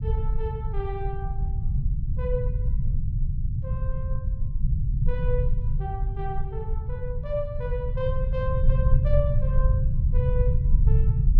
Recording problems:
rumble; below 100 Hz, SNR -8 dB

